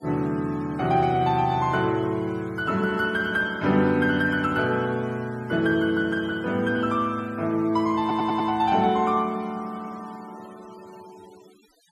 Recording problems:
noise reduction artefacts; signal-to-artefact ratio 25 dB
stutter; at 8 s

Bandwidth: 14 kHz